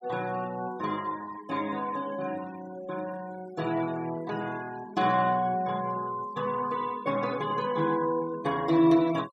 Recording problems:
noise reduction artefacts; signal-to-artefact ratio 20 dB

